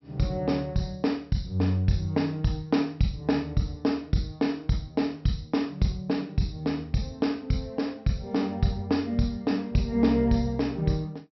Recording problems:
treble missing; nothing above 5.7 kHz

